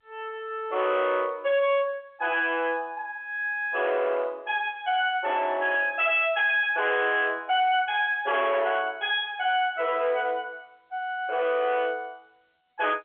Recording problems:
phone line; 300 Hz to 3.5 kHz, G.711
distortion; hard clipping, signal-to-distortion ratio 10 dB

